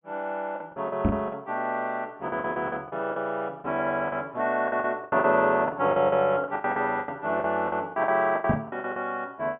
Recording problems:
low-pass filter; nothing above 3.4 kHz
lost packets; 16% of the sound replaced, filled with the last packet
microphone thump; at 1 s and at 8.5 s; peak +6 dB vs average level

